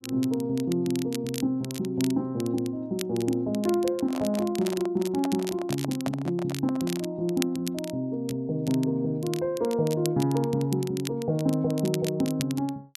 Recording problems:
crackling; vinyl, SNR 13 dB
handling noise; from 4 to 7 s; peak -2 dB vs average level

